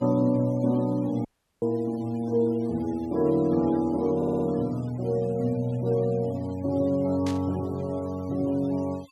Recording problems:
noise reduction artefacts; signal-to-artefact ratio 24 dB
audio cutting out; at 1.5 s
stutter; at 4 s
static burst; at 7.5 s; peak -8 dB vs average level

